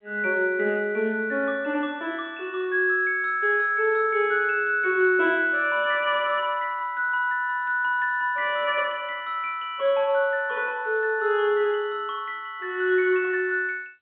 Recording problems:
telephone audio; 240 Hz to 3.7 kHz, G.711

